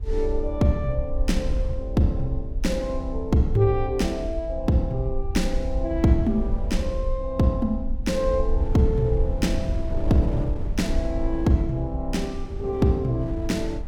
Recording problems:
rumble; below 56 Hz, SNR 6 dB
wind on the microphone; below 180 Hz, SNR 11 dB

